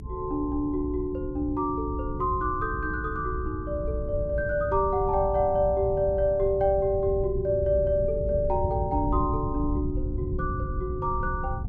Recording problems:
electrical hum; 60 Hz, harmonics up to 420 Hz, SNR 15 dB
low-frequency rumble; below 120 Hz, SNR 7 dB

